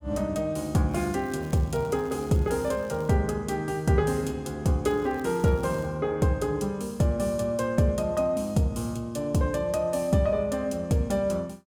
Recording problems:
crackle; from 1 to 3 s and at 5 s; loose cable, SNR 27 dB

